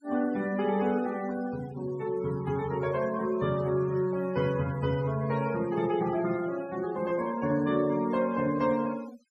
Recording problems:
denoising artefacts; signal-to-artefact ratio 19 dB

